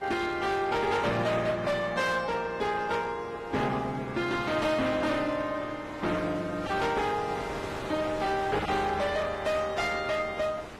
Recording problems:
codec artefacts; AAC, then AAC, log-spectral distance 3 dB, nothing above 13.1 kHz
distortion; hard clipping, signal-to-distortion ratio 10 dB
wind noise; below 2 kHz, SNR 14 dB

